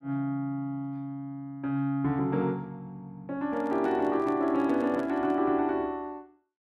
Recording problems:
handling noise; from 3.5 to 5.5 s; peak -11 dB vs average level

